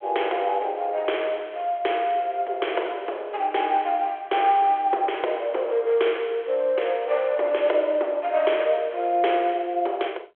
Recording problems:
telephone audio; 320 Hz to 3.4 kHz, G.726

